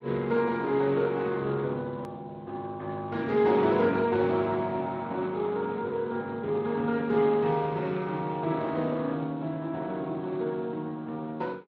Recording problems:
codec artefacts; Speex, log-spectral distance 3 dB
click at an edit; at 2 s

